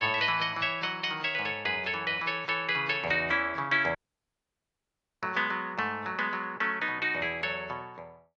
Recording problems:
codec artefacts; AAC, log-spectral distance 2 dB
audio cutting out; at 4 s for 1.5 s

